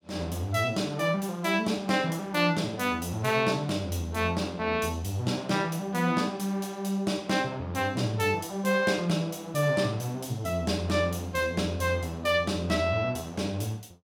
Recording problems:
none

